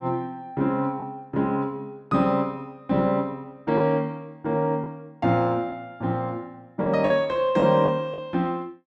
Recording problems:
lost packets; 3% of the sound replaced, filled with the last packet

